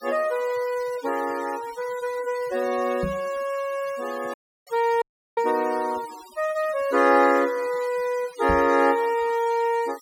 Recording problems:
denoising artefacts; signal-to-artefact ratio 20 dB
microphone thump; at 3 s and at 8.5 s; peak -2 dB vs average level
dropout; at 4.5 s and at 5 s

